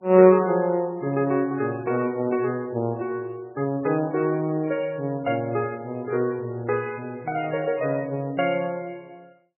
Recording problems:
codec artefacts; MP3, log-spectral distance 2 dB, nothing above 2.5 kHz

